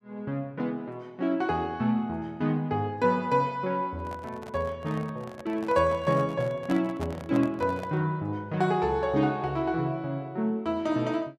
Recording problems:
handling noise; from 4 to 8 s; peak -4 dB vs average level

